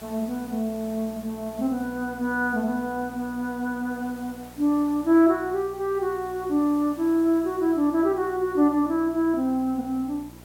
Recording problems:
electrical hum; 60 Hz, harmonics up to 1.3 kHz, SNR 23 dB
background hiss; slope -4 dB per octave, SNR 23 dB

